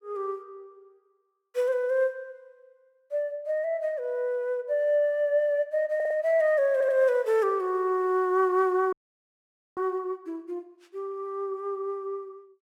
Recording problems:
audio stuttering; at 6 s and at 6.5 s
frozen audio; at 9 s for 1 s

